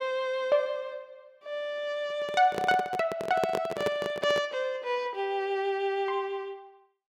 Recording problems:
microphone handling noise; from 2 to 4.5 s; peak +3 dB vs average level

